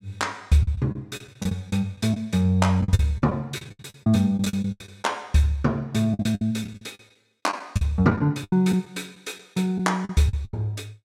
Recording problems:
packet loss; 14% of the sound replaced, filled with the last packet

